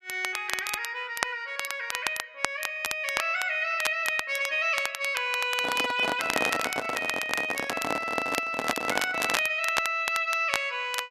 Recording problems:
crackle; vinyl, SNR 6 dB
microphone handling noise; from 5.5 to 9.5 s; peak +4 dB vs average level

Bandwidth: 13.5 kHz